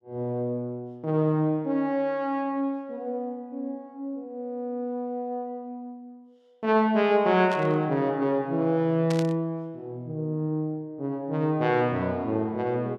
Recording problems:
static burst; at 7.5 s and at 9 s; peak -6 dB vs average level

